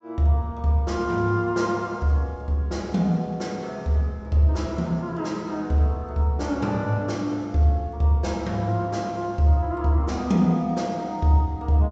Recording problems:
treble cut off; nothing above 8 kHz

